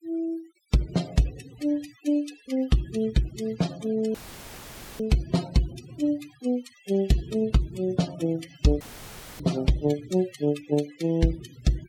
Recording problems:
noise reduction artefacts; signal-to-artefact ratio 17 dB
audio cutting out; at 4 s for 1 s and at 9 s for 0.5 s; filled with static

